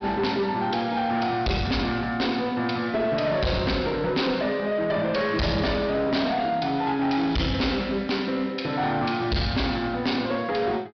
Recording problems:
low-pass filter; nothing above 5.5 kHz
distorted audio; hard clipping, uneven, signal-to-distortion ratio 7 dB

